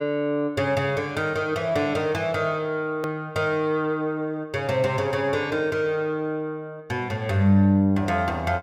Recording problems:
hard cut with a click; at 3 s

